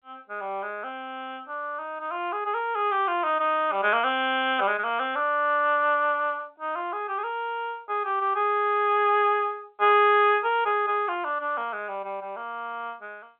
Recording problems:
telephone audio; 300 Hz to 3.7 kHz, G.711

